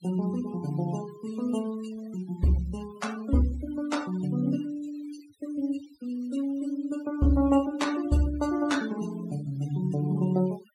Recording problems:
denoising artefacts; signal-to-artefact ratio 18 dB

